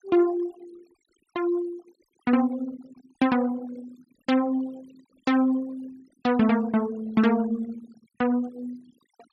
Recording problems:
denoising artefacts; signal-to-artefact ratio 23 dB

